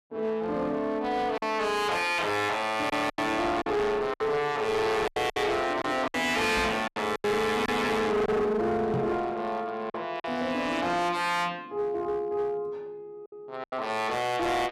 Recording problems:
distorted audio; hard clipping, uneven, signal-to-distortion ratio 7 dB
packet loss; 6% of the sound replaced, filled with silence
microphone bump; at 6.5 s and at 9 s; peak 0 dB vs average level

